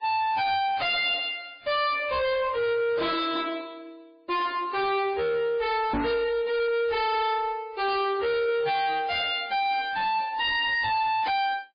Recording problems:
codec artefacts; MP3, log-spectral distance 3 dB, nothing above 4.4 kHz
distortion; hard clipping, uneven, signal-to-distortion ratio 5 dB
microphone thump; at 6 s; peak +1 dB vs average level

